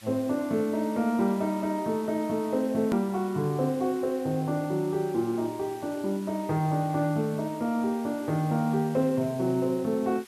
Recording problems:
background hiss; SNR 22 dB
hard cut with a click; at 3 s

